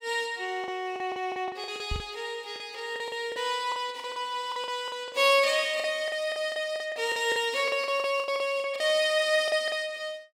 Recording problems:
packet loss; 14% of the sound replaced, filled with the last packet
microphone thump; at 2 s; peak -2 dB vs average level

